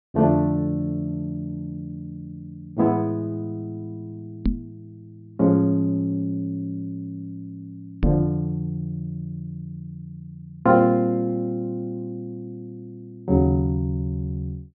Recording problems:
treble cut off; nothing above 5.5 kHz
knock on the microphone; at 4.5 s and at 8 s; peak +6 dB vs average level

